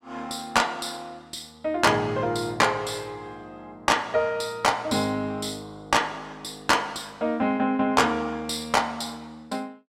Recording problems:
distortion; soft clipping, signal-to-distortion ratio 11 dB

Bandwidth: 16 kHz